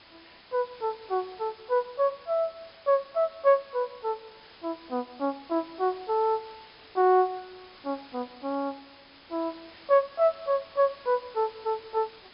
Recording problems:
treble cut off; nothing above 5.5 kHz
hiss; slope -1 dB per octave, SNR 22 dB

